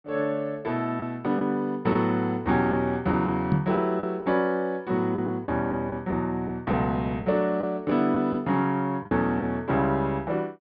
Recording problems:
treble cut off; nothing above 5.5 kHz
lost packets; 4% of the sound replaced, filled with the last packet
microphone bump; at 3.5 s; peak +6 dB vs average level

